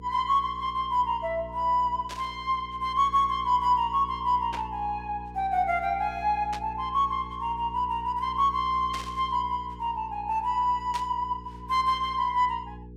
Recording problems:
electrical hum; 60 Hz, harmonics up to 480 Hz, SNR 17 dB
static burst; 5 times, first at 2 s; peak -7 dB vs average level

